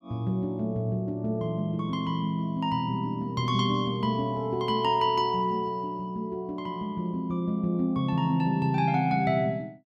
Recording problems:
none

